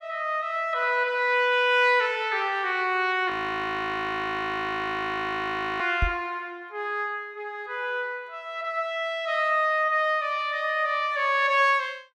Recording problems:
audio freezing; at 3.5 s for 2.5 s
knock on the microphone; at 6 s; peak +2 dB vs average level

